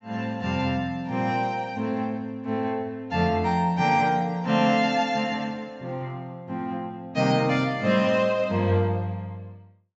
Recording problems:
low-pass filter; nothing above 8 kHz

